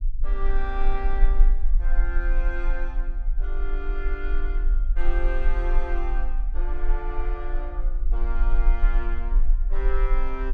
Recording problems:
rumble; below 36 Hz, strongest tone 20 Hz, SNR -9 dB

